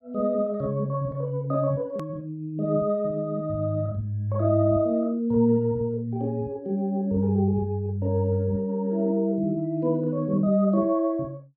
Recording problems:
edit click; at 2 s

